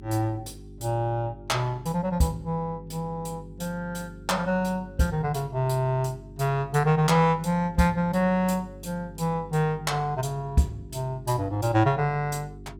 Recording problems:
hum; 50 Hz, harmonics up to 400 Hz, SNR 18 dB

